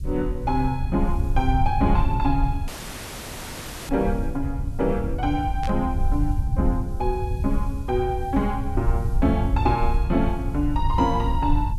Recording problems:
background hiss; SNR 29 dB
rumble; below 84 Hz, SNR 2 dB
audio cutting out; at 2.5 s for 1 s
burst of static; at 5.5 s; peak -9 dB vs average level

